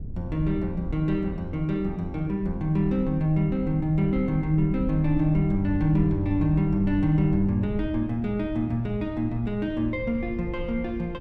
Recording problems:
low-frequency rumble; below 100 Hz, SNR 11 dB

